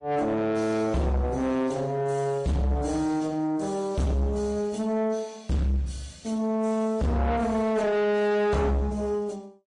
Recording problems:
lossy compression; MP3, then AAC, log-spectral distance 2 dB, nothing above 10.1 kHz
distorted audio; soft clipping, signal-to-distortion ratio 8 dB

